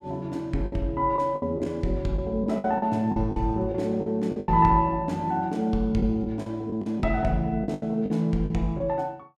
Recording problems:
packet loss; 10% of the sound replaced, filled with the last packet

